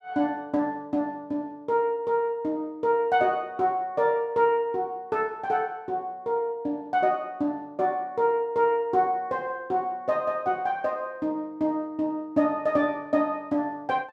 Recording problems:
none

